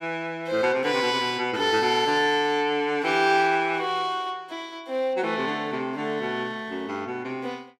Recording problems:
none

